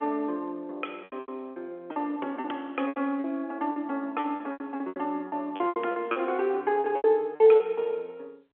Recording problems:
telephone audio; 260 Hz to 3.8 kHz, G.711
lost packets; 14% of the sound replaced, filled with repeated pitch periods

